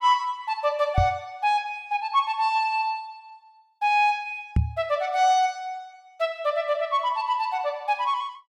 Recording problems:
knock on the microphone; at 1 s and at 4.5 s; peak +6 dB vs average level

